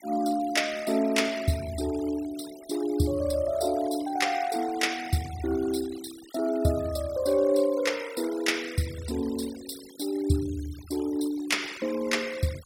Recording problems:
noise reduction artefacts; signal-to-artefact ratio 16 dB

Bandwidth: 16.5 kHz